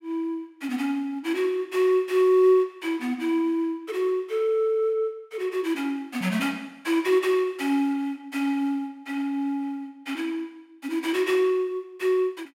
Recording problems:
none

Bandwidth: 16 kHz